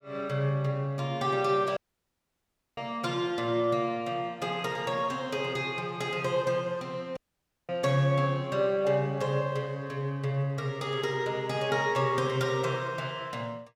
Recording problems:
dropout; at 2 s for 1 s and at 7 s for 0.5 s

